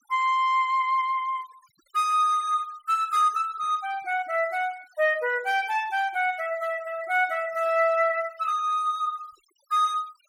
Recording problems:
denoising artefacts; signal-to-artefact ratio 26 dB

